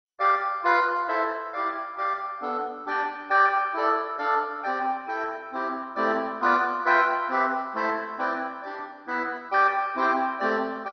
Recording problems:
codec artefacts; MP2, log-spectral distance 3 dB, nothing above 5.8 kHz

